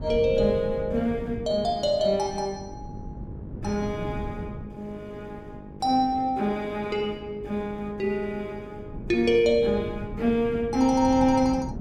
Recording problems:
electrical hum; 50 Hz, harmonics up to 1.1 kHz, SNR 21 dB
wind on the microphone; below 210 Hz, SNR 14 dB

